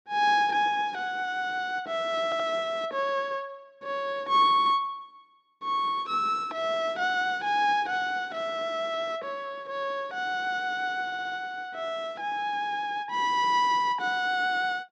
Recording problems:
stutter; at 2 s and at 11 s

